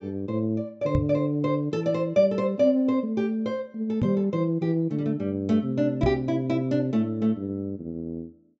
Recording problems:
treble missing; nothing above 8 kHz
microphone thump; at 1 s, at 4 s and at 6 s; peak +3 dB vs average level

